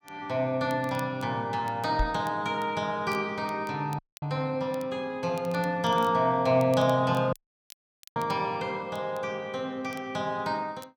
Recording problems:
crackling; vinyl, SNR 25 dB
knock on the microphone; at 2 s; peak +2 dB vs average level
audio cutting out; at 4 s and at 7.5 s for 1 s

